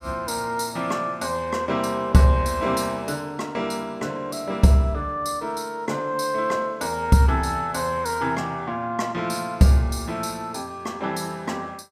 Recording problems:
none

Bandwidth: 15 kHz